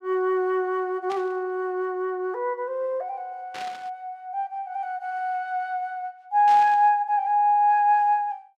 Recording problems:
burst of static; at 1 s, at 3.5 s and at 6.5 s; peak -11 dB vs average level

